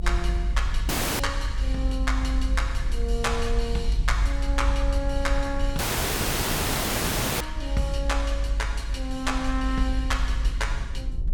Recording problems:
mains hum; 50 Hz, harmonics up to 400 Hz, SNR 17 dB
rumble; below 50 Hz, strongest tone 48 Hz, SNR -2 dB
audio cutting out; at 1 s and at 6 s for 1.5 s

